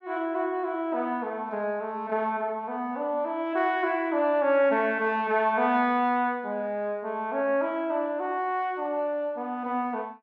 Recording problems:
none

